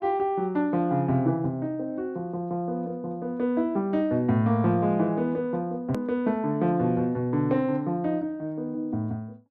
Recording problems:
click at an edit; at 6 s

